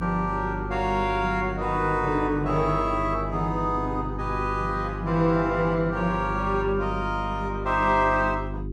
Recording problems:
hum; 50 Hz, harmonics up to 400 Hz, SNR 8 dB

